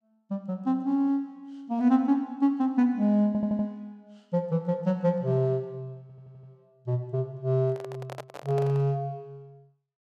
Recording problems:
audio stuttering; at 3.5 s and at 6 s
microphone handling noise; from 7.5 to 9 s; peak -8 dB vs average level

